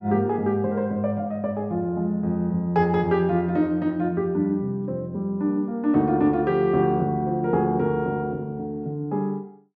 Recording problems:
none

